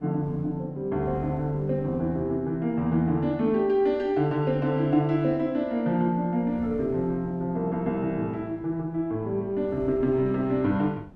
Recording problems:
wind on the microphone; below 300 Hz, SNR 21 dB

